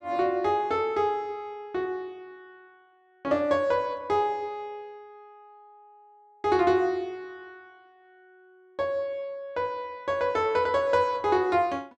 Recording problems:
none

